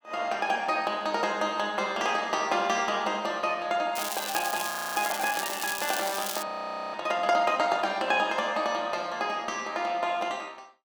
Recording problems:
crackle; from 4 to 6.5 s; loose cable, SNR 5 dB
frozen audio; at 4.5 s and at 6.5 s

